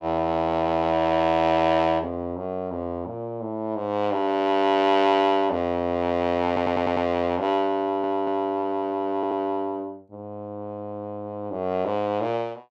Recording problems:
audio stuttering; at 6.5 s, at 8 s and at 9 s

